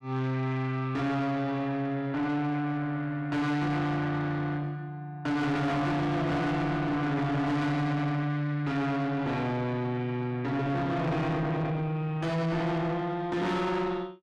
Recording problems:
distortion; soft clipping, signal-to-distortion ratio 6 dB

